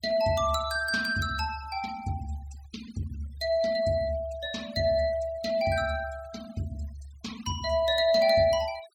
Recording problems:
denoising artefacts; signal-to-artefact ratio 19 dB

